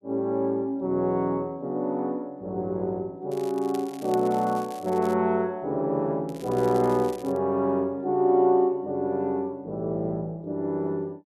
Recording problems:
crackle; from 3.5 to 5 s and from 6.5 to 7.5 s; loose cable, SNR 22 dB

